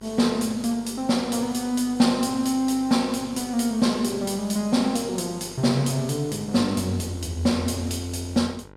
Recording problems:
hum; 50 Hz, harmonics up to 2 kHz, SNR 22 dB

